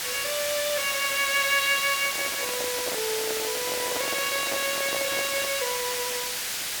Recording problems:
background hiss; slope +2 dB per octave, SNR 0 dB
handling noise; from 2 to 5.5 s; peak -2 dB vs average level

